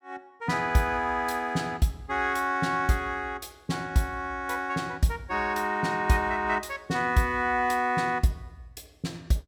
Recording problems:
none

